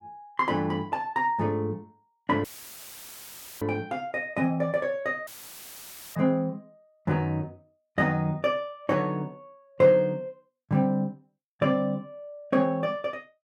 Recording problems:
dropout; at 2.5 s for 1 s and at 5.5 s for 1 s; filled with static

